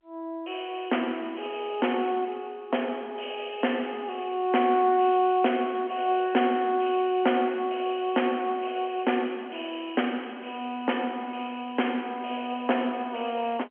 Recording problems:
telephone audio; 220 Hz to 3.3 kHz, G.711

